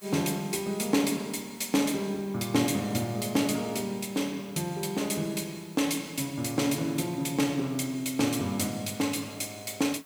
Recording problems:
background hiss; SNR 24 dB

